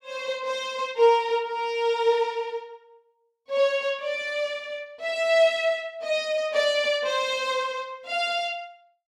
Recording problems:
none

